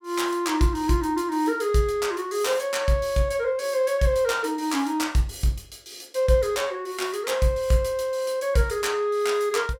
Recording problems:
none

